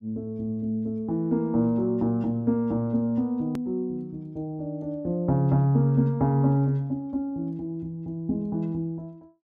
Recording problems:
click at an edit; at 3.5 s

